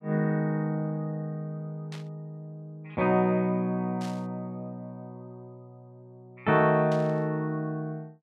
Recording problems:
static burst; at 2 s, at 4 s and at 7 s; peak -11 dB vs average level

